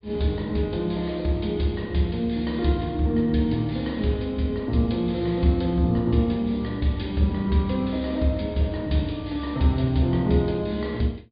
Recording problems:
treble cut off; nothing above 4.9 kHz

